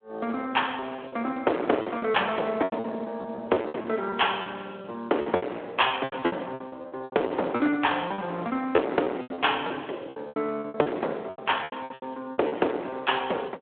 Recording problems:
phone line; 280 Hz to 3.5 kHz, Speex
distortion; hard clipping, uneven, signal-to-distortion ratio 10 dB
packet loss; 16% of the sound replaced, filled with repeated pitch periods

